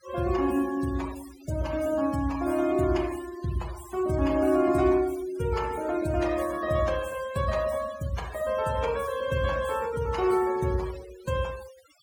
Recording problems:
denoising artefacts; signal-to-artefact ratio 17 dB

